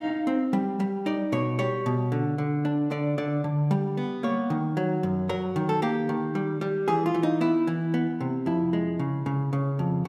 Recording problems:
none

